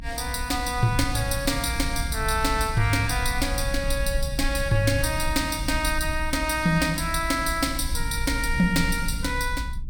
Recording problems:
rumble; below 64 Hz, SNR 7 dB

